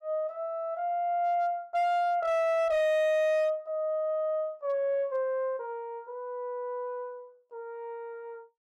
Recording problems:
distortion; hard clipping, signal-to-distortion ratio 12 dB

